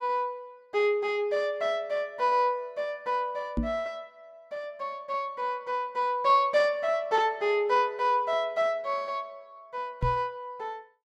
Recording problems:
microphone thump; at 3.5 s and at 10 s; peak +3 dB vs average level

